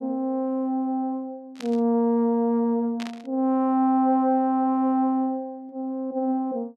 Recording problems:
burst of static; at 1.5 s and at 3 s; peak -9 dB vs average level

